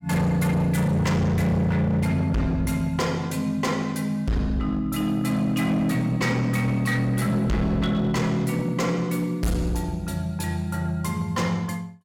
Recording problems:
distortion; hard clipping, signal-to-distortion ratio 7 dB

